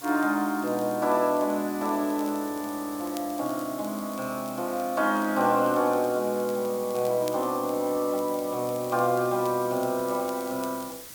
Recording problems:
hiss; SNR 14 dB
crackling; vinyl, SNR 25 dB

